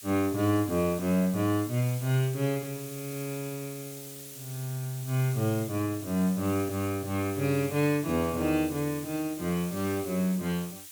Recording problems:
hiss; slope +4 dB per octave, SNR 13 dB

